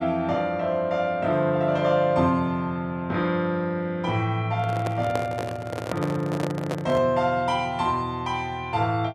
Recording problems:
handling noise; from 4.5 to 7 s; peak -1 dB vs average level

